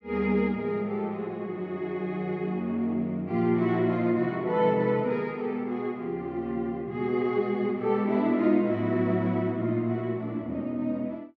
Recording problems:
none

